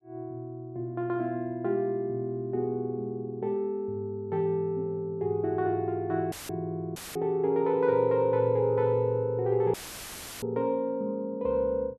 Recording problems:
audio cutting out; at 6.5 s, at 7 s and at 9.5 s for 0.5 s; filled with static

